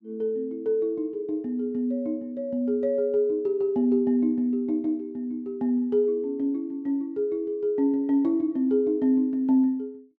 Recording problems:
none

